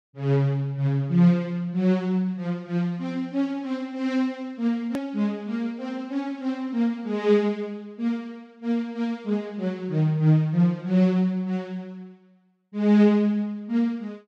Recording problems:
hard cut with a click; at 5 s

